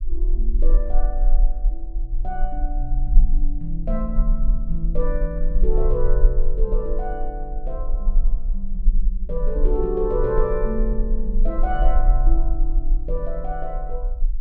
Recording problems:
low-frequency rumble; below 36 Hz, strongest tone 18 Hz, SNR -4 dB

